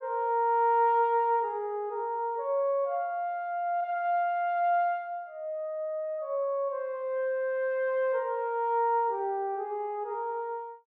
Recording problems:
none

